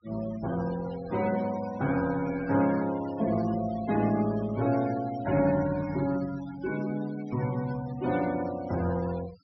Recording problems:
treble missing; nothing above 5.8 kHz
denoising artefacts; signal-to-artefact ratio 16 dB

